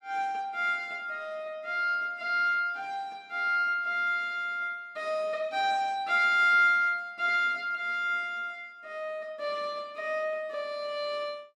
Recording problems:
none

